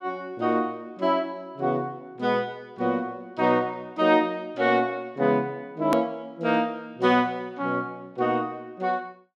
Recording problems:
hard cut with a click; at 6 s

